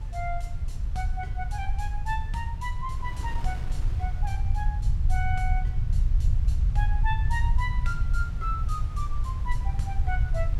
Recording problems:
low-frequency rumble; below 72 Hz, SNR -6 dB
wind noise; below 480 Hz, SNR 12 dB

